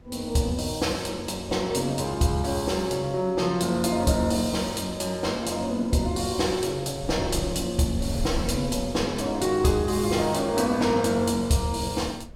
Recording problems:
wind noise; below 120 Hz, SNR 16 dB

